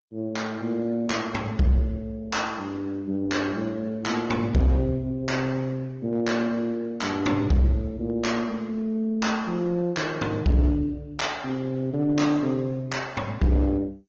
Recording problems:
codec artefacts; MP2, then Opus, log-spectral distance 3 dB, nothing above 6.7 kHz
distorted audio; hard clipping, uneven, signal-to-distortion ratio 10 dB

